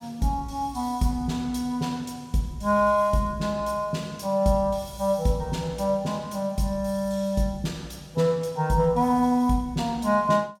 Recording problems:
none

